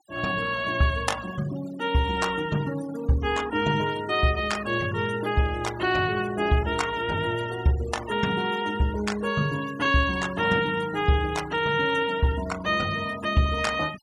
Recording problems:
noise reduction artefacts; signal-to-artefact ratio 17 dB

